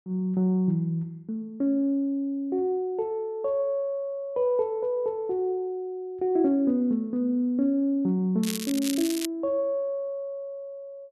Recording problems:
crackling; at 8.5 s; loose cable, SNR 8 dB

